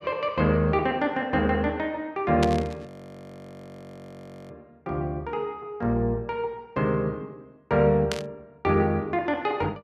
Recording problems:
static burst; at 2.5 s and at 8 s; peak 0 dB vs average level
audio freezing; at 3 s for 1.5 s

